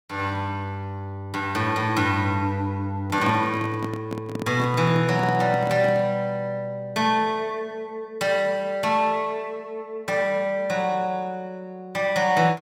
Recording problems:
microphone handling noise; from 3 to 6 s; peak -2 dB vs average level

